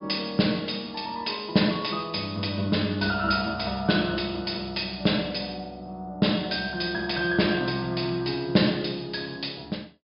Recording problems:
treble missing; nothing above 5.5 kHz

